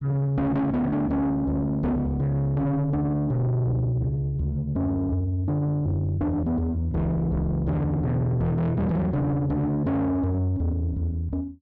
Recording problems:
distortion; soft clipping, signal-to-distortion ratio 8 dB

